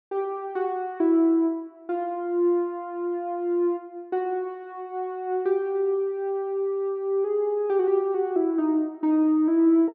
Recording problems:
none

